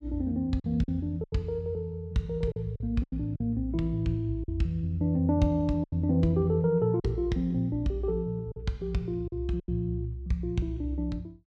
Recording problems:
packet loss; 6% of the sound replaced, filled with silence

